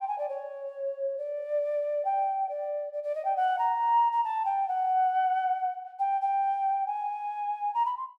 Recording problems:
none

